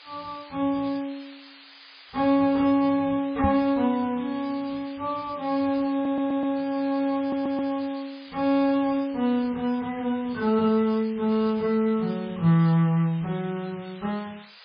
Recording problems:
codec artefacts; MP3, log-spectral distance 15 dB, nothing above 4.6 kHz
background hiss; SNR 21 dB
microphone thump; at 3.5 s; peak +3 dB vs average level
stutter; at 6 s and at 7 s

